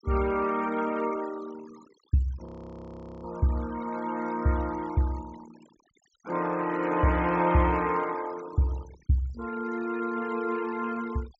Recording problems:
treble cut off; nothing above 8 kHz
denoising artefacts; signal-to-artefact ratio 20 dB
audio freezing; at 2.5 s for 1 s

